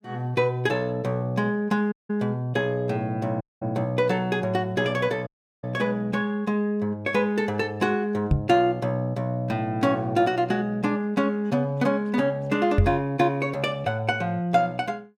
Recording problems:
dropout; at 2 s, at 3.5 s and at 5.5 s
microphone bump; at 8.5 s and at 13 s; peak +8 dB vs average level

